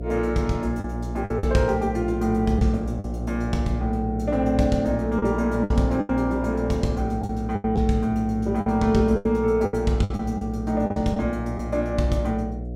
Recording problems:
hum; 60 Hz, harmonics up to 720 Hz, SNR 7 dB
lost packets; 7% of the sound replaced, filled with the last packet

